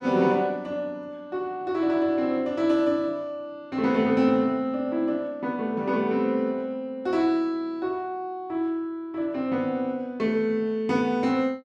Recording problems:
none

